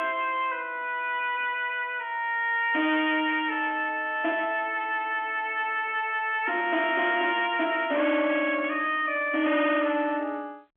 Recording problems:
telephone audio; 190 Hz to 3.4 kHz, G.711
distorted audio; hard clipping, uneven, signal-to-distortion ratio 9 dB

